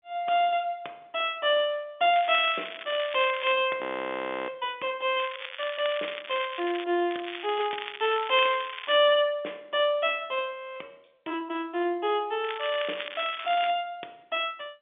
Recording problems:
telephone audio; 280 Hz to 3.6 kHz, G.711
crackling; 4 times, first at 2 s; loose cable, SNR 11 dB
audio freezing; at 4 s for 0.5 s and at 11 s

